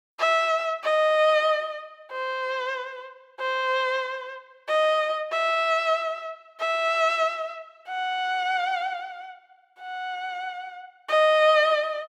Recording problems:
none

